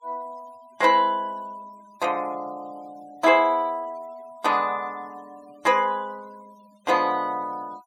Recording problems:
denoising artefacts; signal-to-artefact ratio 28 dB

